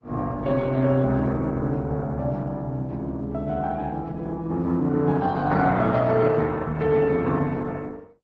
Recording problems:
lossy compression; AAC, then Opus, log-spectral distance 2 dB

